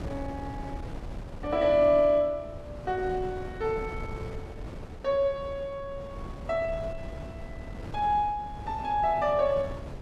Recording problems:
wind on the microphone; below 310 Hz, SNR 13 dB

